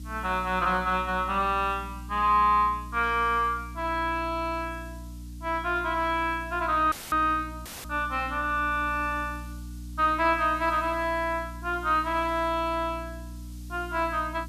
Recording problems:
hum; 60 Hz, harmonics up to 300 Hz, SNR 14 dB
hiss; SNR 27 dB
audio cutting out; at 7 s and at 7.5 s; filled with static

